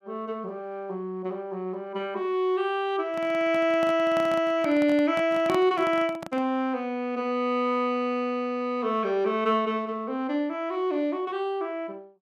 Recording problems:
microphone handling noise; from 3 to 6.5 s; peak -2 dB vs average level

